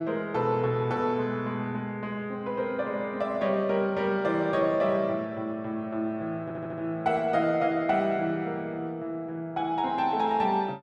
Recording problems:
audio stuttering; at 6.5 s

